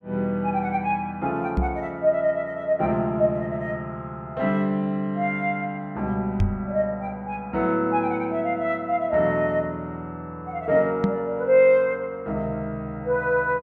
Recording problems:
microphone bump; at 1.5 s, at 6.5 s and at 11 s; peak +6 dB vs average level

